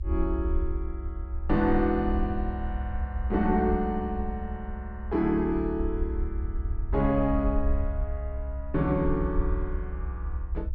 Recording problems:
rumble; below 66 Hz, SNR 4 dB

